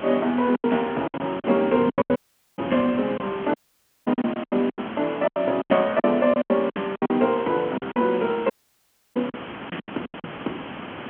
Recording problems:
telephone audio; 190 Hz to 3.3 kHz, G.711
hiss; SNR 13 dB
wind noise; below 320 Hz, SNR 17 dB
lost packets; 15% of the sound replaced, filled with silence
audio cutting out; at 2 s, at 3.5 s and at 8.5 s for 0.5 s

